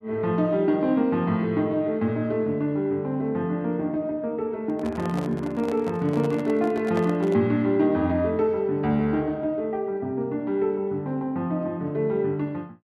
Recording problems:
microphone handling noise; from 4.5 to 7.5 s; peak -4 dB vs average level

